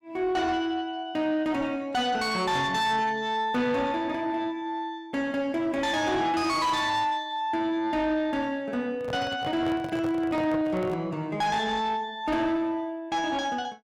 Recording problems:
distortion; soft clipping, signal-to-distortion ratio 10 dB
handling noise; from 9 to 11 s; peak -4 dB vs average level

